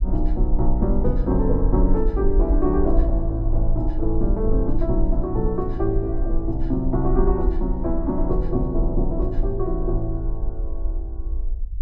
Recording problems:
rumble; below 46 Hz, SNR 2 dB

